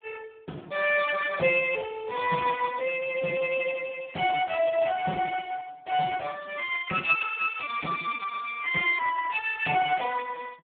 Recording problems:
telephone audio; 170 Hz to 3.4 kHz, Speex

